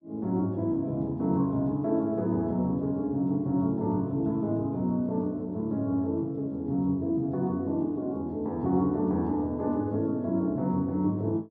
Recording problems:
none

